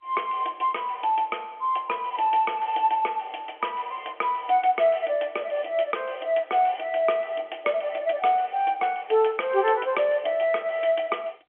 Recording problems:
telephone audio; 280 Hz to 3.3 kHz, G.711

